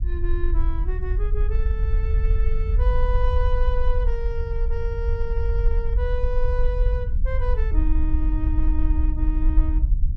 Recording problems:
rumble; below 56 Hz, SNR -8 dB

